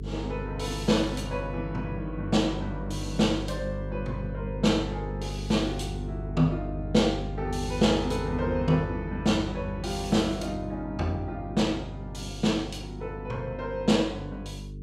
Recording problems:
hum; 50 Hz, harmonics up to 450 Hz, SNR 8 dB

